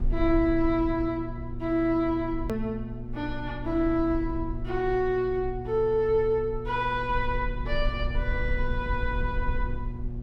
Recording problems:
hum; 60 Hz, harmonics up to 720 Hz, SNR 11 dB
rumble; below 56 Hz, SNR 9 dB
hard cut with a click; at 2.5 s

